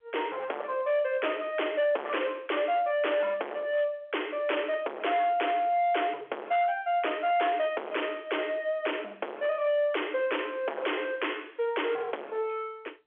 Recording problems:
phone line; 340 Hz to 3.4 kHz, G.711
distorted audio; hard clipping, signal-to-distortion ratio 3 dB

